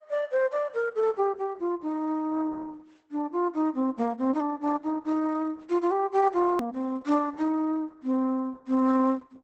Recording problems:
lossy compression; Opus, log-spectral distance 2 dB, nothing above 19.5 kHz
hard cut with a click; at 6.5 s

